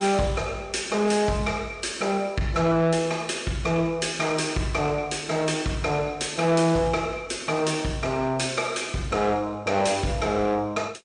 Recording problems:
lossy compression; MP3, log-spectral distance 3 dB, nothing above 9.5 kHz
distorted audio; soft clipping, signal-to-distortion ratio 10 dB

